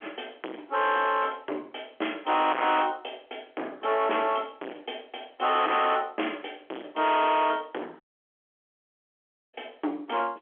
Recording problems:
phone line; 260 Hz to 3.4 kHz, G.711
distortion; soft clipping, signal-to-distortion ratio 3 dB
dropout; at 8 s for 1.5 s

